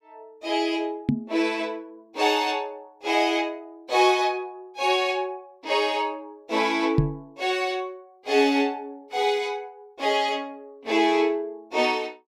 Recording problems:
microphone thump; at 1 s and at 7 s; peak +8 dB vs average level

